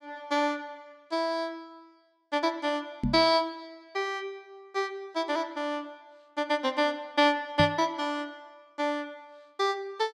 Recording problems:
microphone thump; at 3 s and at 7.5 s; peak +5 dB vs average level

